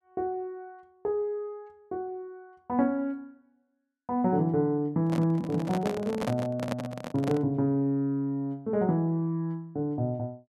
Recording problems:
handling noise; from 5 to 7.5 s; peak +1 dB vs average level

